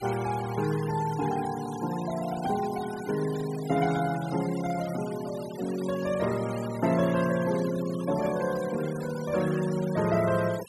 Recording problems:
noise reduction artefacts; signal-to-artefact ratio 15 dB

